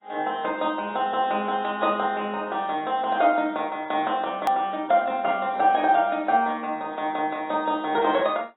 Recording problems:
lossy codec; AAC, log-spectral distance 3 dB, nothing above 20.1 kHz
hard cut with a click; at 4.5 s

